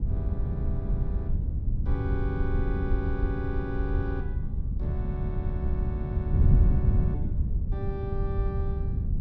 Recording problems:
wind noise; below 110 Hz, SNR -8 dB

